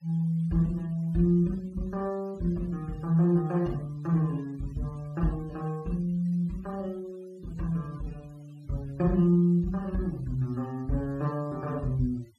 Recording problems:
denoising artefacts; signal-to-artefact ratio 28 dB

